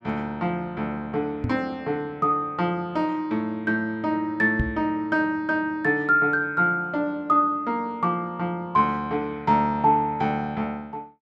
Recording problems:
microphone bump; at 1.5 s and at 4.5 s; peak +2 dB vs average level

